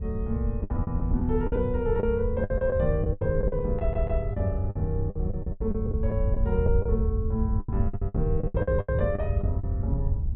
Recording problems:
treble cut off; nothing above 4 kHz
wind on the microphone; below 90 Hz, SNR 0 dB
lost packets; 15% of the sound replaced, filled with the last packet
audio stuttering; at 4 s

